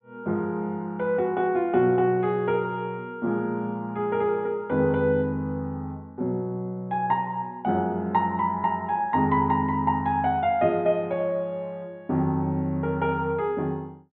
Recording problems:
low-pass filter; nothing above 4 kHz

